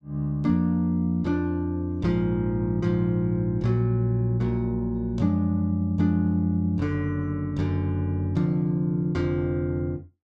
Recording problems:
none

